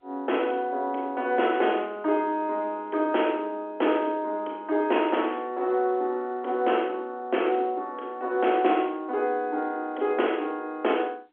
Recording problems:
telephone audio; 260 Hz to 3.4 kHz, G.711

